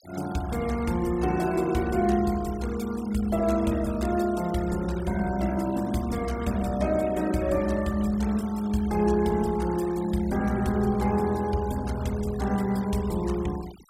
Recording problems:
denoising artefacts; signal-to-artefact ratio 18 dB

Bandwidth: 16 kHz